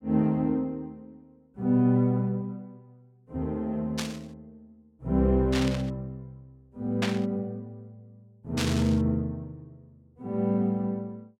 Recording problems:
burst of static; 4 times, first at 4 s; peak +1 dB vs average level

